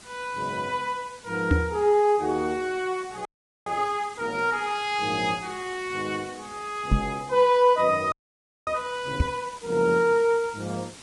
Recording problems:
lossy compression; Vorbis, log-spectral distance 5 dB, nothing above 10.1 kHz
hiss; slope -1 dB per octave, SNR 20 dB
microphone thump; at 1.5 s, at 7 s and at 9 s; peak +6 dB vs average level
frozen audio; at 3.5 s and at 8 s for 0.5 s

